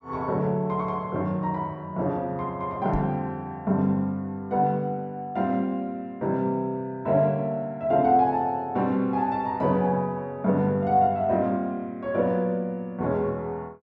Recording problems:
knock on the microphone; at 3 s; peak -3 dB vs average level

